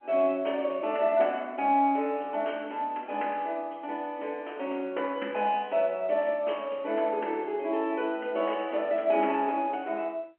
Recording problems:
phone line; 280 Hz to 3.1 kHz, G.711

